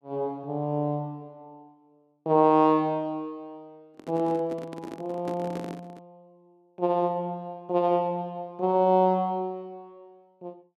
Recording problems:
handling noise; from 4 to 6 s; peak -6 dB vs average level

